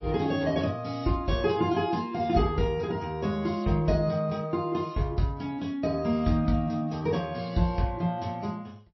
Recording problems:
lossy compression; MP3, log-spectral distance 2 dB, nothing above 5.7 kHz

